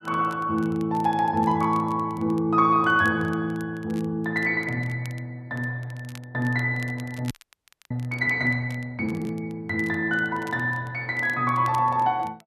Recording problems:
crackling; vinyl, SNR 26 dB
frozen audio; at 7.5 s for 0.5 s

